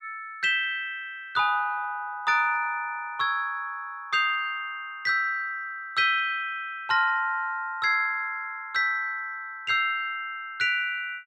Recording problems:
none

